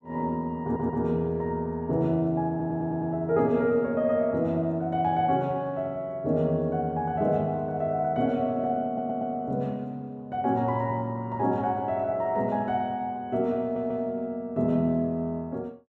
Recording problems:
audio stuttering; 4 times, first at 0.5 s

